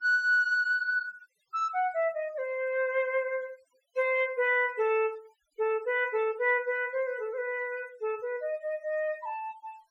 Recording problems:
denoising artefacts; signal-to-artefact ratio 27 dB

